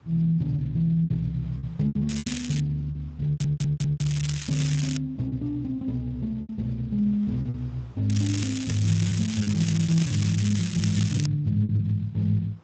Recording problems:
lossy compression; Speex, log-spectral distance 5 dB, nothing above 13.1 kHz
wind on the microphone; below 970 Hz, SNR 30 dB
packet loss; 7% of the sound replaced, filled with repeated pitch periods
crackling; at 2 s, from 3.5 to 5 s and from 8 to 11 s; loose cable, SNR 10 dB
audio stuttering; at 3.5 s

